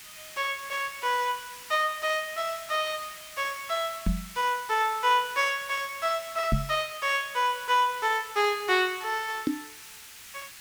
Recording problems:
background hiss; SNR 15 dB
knock on the microphone; at 4 s, at 6.5 s and at 9.5 s; peak +5 dB vs average level

